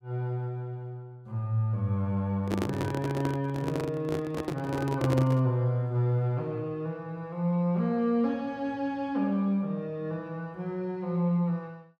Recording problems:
handling noise; from 2.5 to 5.5 s; peak +3 dB vs average level

